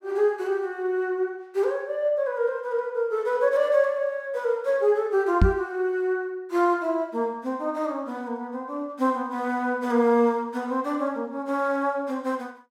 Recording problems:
microphone bump; at 5.5 s; peak +9 dB vs average level

